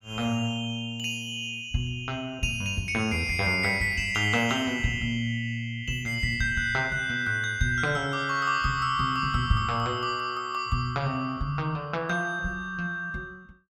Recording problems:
none

